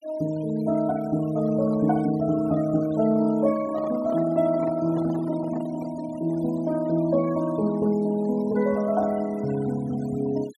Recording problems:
noise reduction artefacts; signal-to-artefact ratio 19 dB
microphone handling noise; from 3.5 to 6 s; peak -9 dB vs average level

